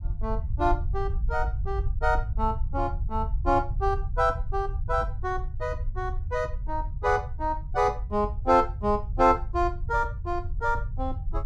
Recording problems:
low-frequency rumble; below 76 Hz, SNR 5 dB

